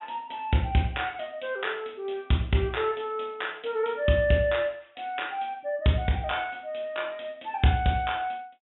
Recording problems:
treble missing; nothing above 3.7 kHz

